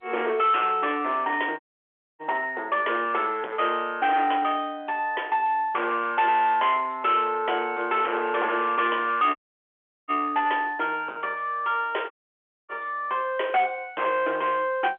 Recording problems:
phone line; 320 Hz to 3.4 kHz, G.711
distortion; soft clipping, signal-to-distortion ratio 10 dB
audio cutting out; at 1.5 s for 0.5 s, at 9.5 s for 0.5 s and at 12 s for 0.5 s

